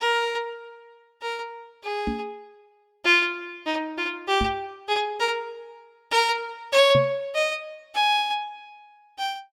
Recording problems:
microphone thump; at 2 s, at 4.5 s and at 7 s; peak +1 dB vs average level

